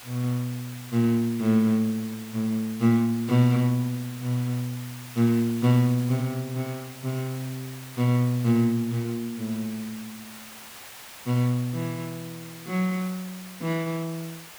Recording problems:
hiss; slope 0 dB per octave, SNR 16 dB

